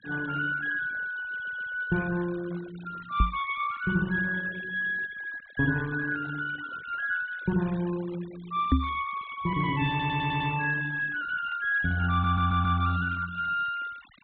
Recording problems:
low-pass filter; nothing above 4 kHz
denoising artefacts; signal-to-artefact ratio 20 dB
audio stuttering; at 1.5 s, at 10 s and at 12 s
microphone bump; at 3 s and at 8.5 s; peak +9 dB vs average level

